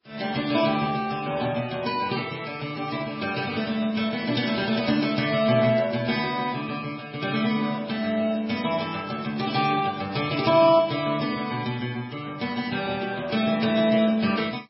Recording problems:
lossy compression; Vorbis, then MP3, log-spectral distance 5 dB, nothing above 5.5 kHz

